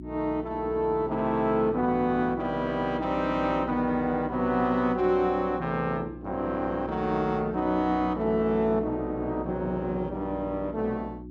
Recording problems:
electrical hum; 60 Hz, harmonics up to 360 Hz, SNR 13 dB

